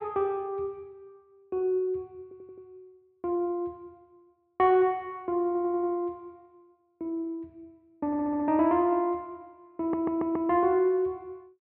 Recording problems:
audio stuttering; 4 times, first at 2 s

